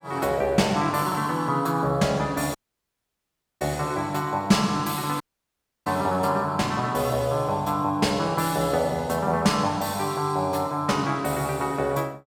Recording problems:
audio cutting out; at 2.5 s for 1 s and at 5 s for 0.5 s

